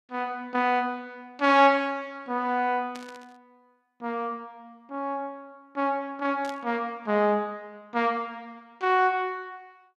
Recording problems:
static burst; at 3 s and at 6.5 s; peak -12 dB vs average level

